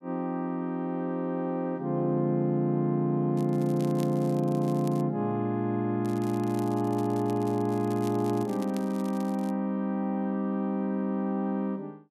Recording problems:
crackle; from 3.5 to 5 s and from 6 to 9.5 s; loose cable, SNR 22 dB

